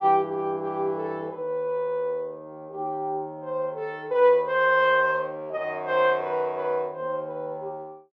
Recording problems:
none

